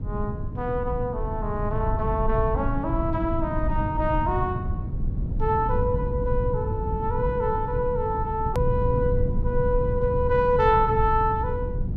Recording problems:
rumble; below 130 Hz, SNR 3 dB
hard cut with a click; at 8.5 s

